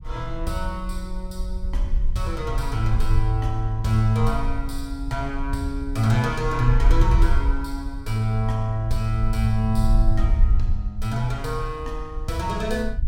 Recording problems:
low-frequency rumble; below 52 Hz, SNR 2 dB

